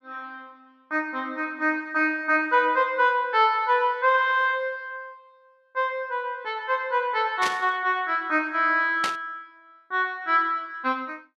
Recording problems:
burst of static; at 7.5 s and at 9 s; peak 0 dB vs average level

